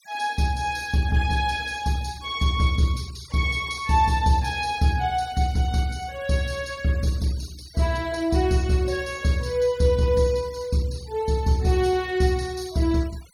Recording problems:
denoising artefacts; signal-to-artefact ratio 22 dB

